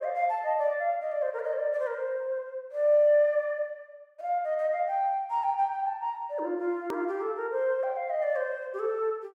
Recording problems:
hard cut with a click; at 7 s

